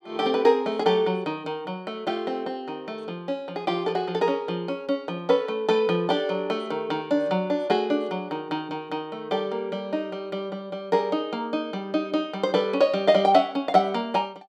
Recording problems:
none

